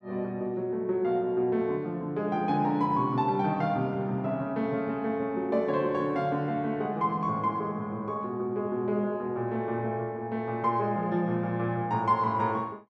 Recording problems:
none

